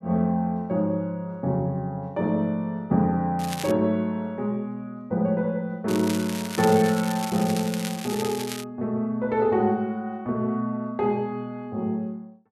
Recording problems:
crackle; at 3.5 s and from 6 to 8.5 s; loose cable, SNR 10 dB

